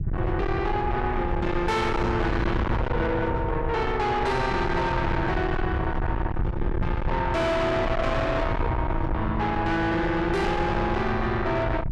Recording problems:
distorted audio; soft clipping, signal-to-distortion ratio 6 dB
low-frequency rumble; below 350 Hz, SNR 4 dB

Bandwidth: 12.5 kHz